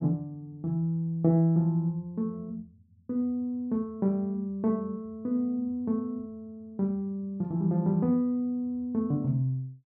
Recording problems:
none

